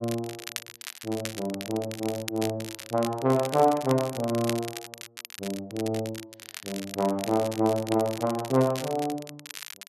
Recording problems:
crackle; vinyl, SNR 12 dB

